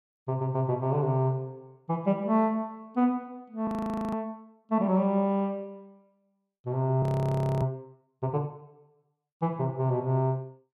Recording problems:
frozen audio; at 3.5 s and at 7 s for 0.5 s

